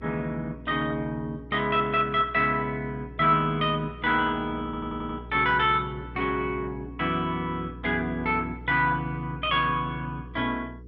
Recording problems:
codec artefacts; MP2, log-spectral distance 2 dB, nothing above 5.5 kHz
mains hum; 60 Hz, harmonics up to 480 Hz, SNR 17 dB
stutter; at 4.5 s

